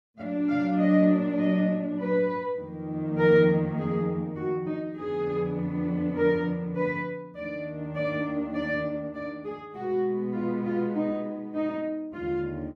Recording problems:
none

